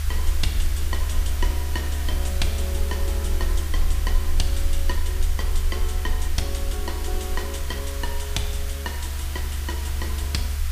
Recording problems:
hiss; SNR 4 dB
rumble; below 72 Hz, SNR -6 dB

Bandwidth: 15 kHz